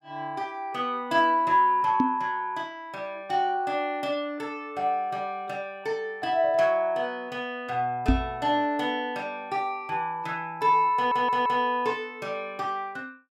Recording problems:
microphone bump; at 2 s and at 8 s; peak +8 dB vs average level
stutter; at 11 s

